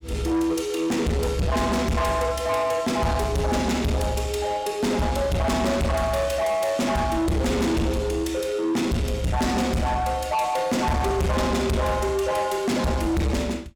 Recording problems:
distortion; soft clipping, signal-to-distortion ratio 7 dB

